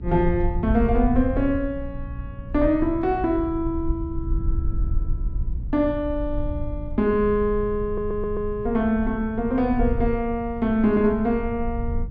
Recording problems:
hum; 60 Hz, harmonics up to 480 Hz, SNR 19 dB
low-frequency rumble; below 72 Hz, SNR 8 dB
audio stuttering; at 8 s

